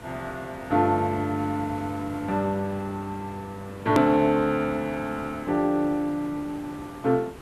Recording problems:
hiss; slope -6 dB per octave, SNR 17 dB
edit click; at 4 s

